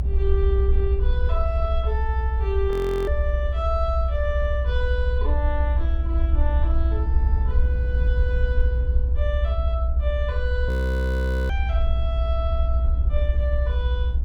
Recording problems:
low-frequency rumble; below 66 Hz, strongest tone 60 Hz, SNR -7 dB
audio freezing; at 2.5 s and at 11 s for 1 s

